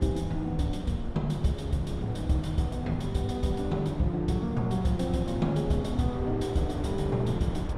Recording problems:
rumble; below 70 Hz, SNR 14 dB
wind noise; below 590 Hz, SNR 10 dB

